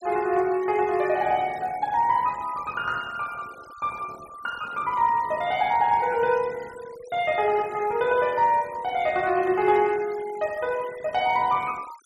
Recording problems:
denoising artefacts; signal-to-artefact ratio 22 dB

